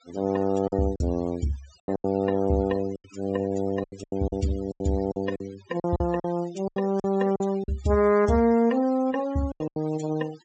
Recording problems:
treble cut off; nothing above 8 kHz
denoising artefacts; signal-to-artefact ratio 20 dB
packet loss; 11% of the sound replaced, filled with silence

